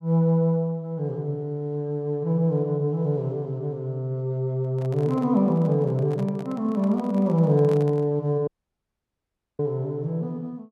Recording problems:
microphone handling noise; from 4.5 to 8 s; peak -10 dB vs average level
dropout; at 8.5 s for 1 s

